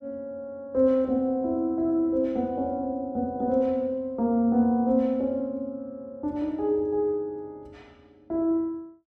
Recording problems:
none

